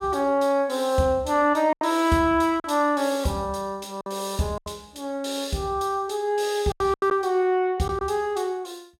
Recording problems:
lost packets; 5% of the sound replaced, filled with silence

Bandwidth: 16.5 kHz